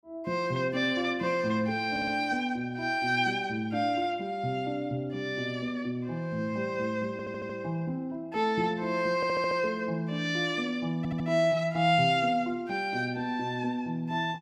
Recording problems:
audio stuttering; 4 times, first at 2 s

